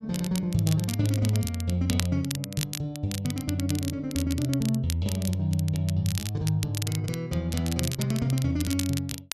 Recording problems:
crackling; vinyl, SNR 9 dB

